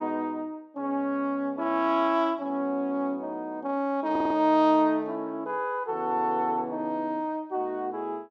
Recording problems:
audio stuttering; at 4 s

